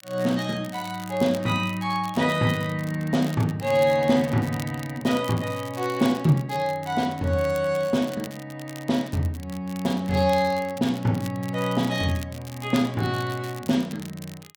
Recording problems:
crackle; vinyl, SNR 19 dB

